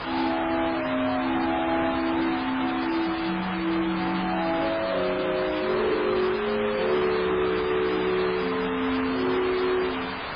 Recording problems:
lossy compression; MP3, then MP3, log-spectral distance 8 dB, nothing above 10.7 kHz
distortion; soft clipping, signal-to-distortion ratio 10 dB
hiss; SNR 5 dB

